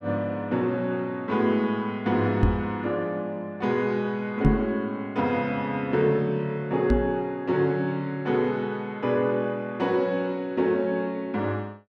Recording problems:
microphone bump; at 2.5 s, at 4.5 s and at 7 s; peak +9 dB vs average level

